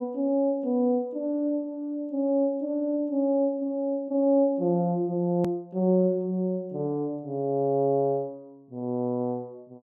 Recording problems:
edit click; at 5.5 s

